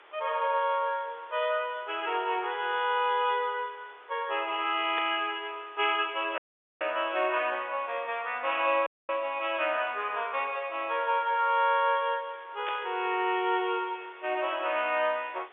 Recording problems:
telephone audio; 320 Hz to 3.6 kHz, G.711
background hiss; SNR 24 dB
burst of static; at 5 s and at 13 s; peak -4 dB vs average level
dropout; at 6.5 s and at 9 s

